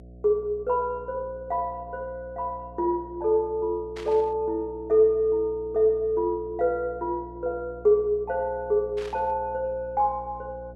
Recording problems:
electrical hum; 60 Hz, harmonics up to 720 Hz, SNR 20 dB
static burst; at 4 s and at 9 s; peak -12 dB vs average level

